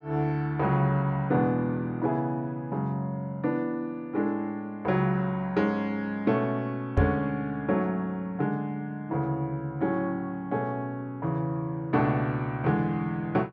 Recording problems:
microphone thump; at 7 s; peak +7 dB vs average level

